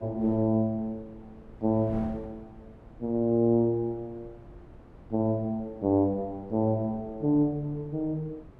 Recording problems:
wind on the microphone; below 340 Hz, SNR 21 dB

